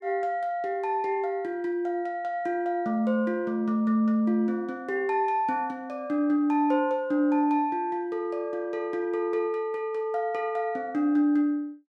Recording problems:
none

